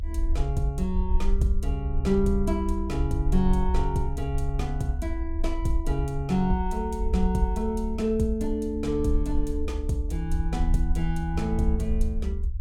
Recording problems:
rumble; below 68 Hz, SNR 2 dB

